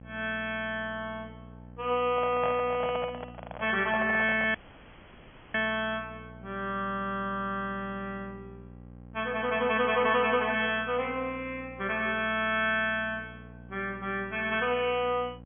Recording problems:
treble cut off; nothing above 3.4 kHz
hum; 60 Hz, harmonics up to 1.1 kHz, SNR 19 dB
microphone handling noise; from 2 to 4.5 s; peak -3 dB vs average level
audio cutting out; at 4.5 s for 1 s

